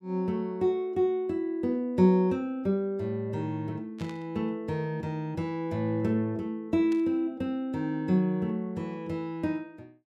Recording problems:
burst of static; at 4 s and at 7 s; peak -13 dB vs average level

